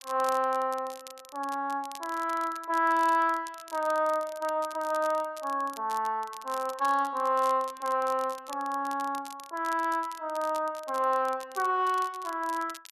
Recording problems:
crackle; vinyl, SNR 19 dB

